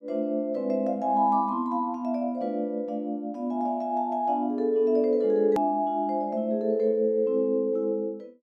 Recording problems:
hard cut with a click; at 5.5 s

